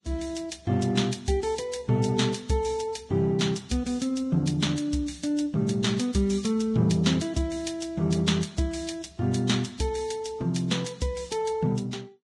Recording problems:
codec artefacts; Vorbis, log-spectral distance 3 dB, nothing above 10.1 kHz

